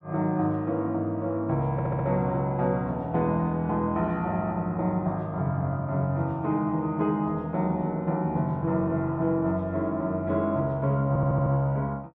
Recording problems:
stutter; at 1.5 s and at 11 s

